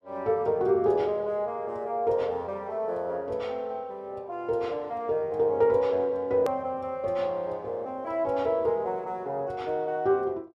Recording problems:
hard cut with a click; at 6.5 s

